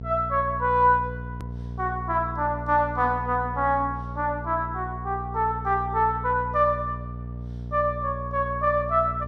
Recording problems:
mains hum; 60 Hz, harmonics up to 660 Hz, SNR 10 dB
edit click; at 1.5 s

